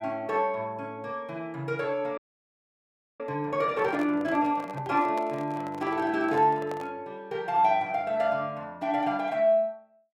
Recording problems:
frozen audio; at 2 s for 1 s
handling noise; from 3.5 to 7 s; peak -7 dB vs average level

